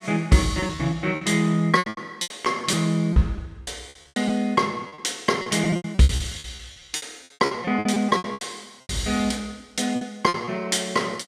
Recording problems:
packet loss; 16% of the sound replaced, filled with repeated pitch periods

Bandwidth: 14.5 kHz